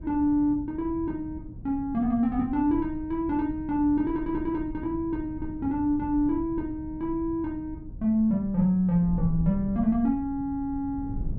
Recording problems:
wind on the microphone; below 130 Hz, SNR 13 dB

